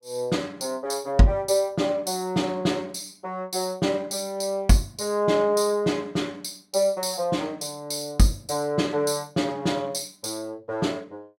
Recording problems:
none

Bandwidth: 16.5 kHz